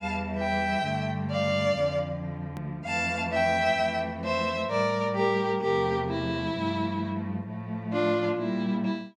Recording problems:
hard cut with a click; at 2.5 s

